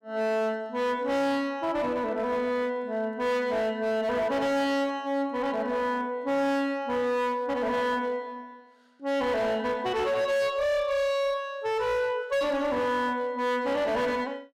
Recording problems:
distortion; hard clipping, signal-to-distortion ratio 10 dB

